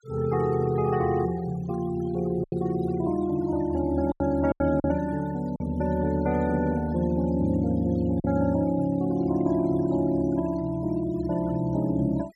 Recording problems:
denoising artefacts; signal-to-artefact ratio 22 dB
packet loss; 3% of the sound replaced, filled with silence

